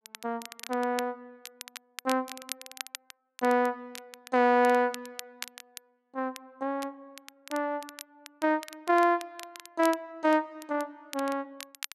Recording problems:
crackle; vinyl, SNR 16 dB

